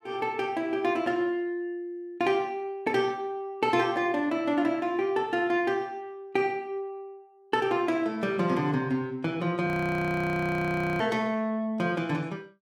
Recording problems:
frozen audio; at 9.5 s for 1.5 s

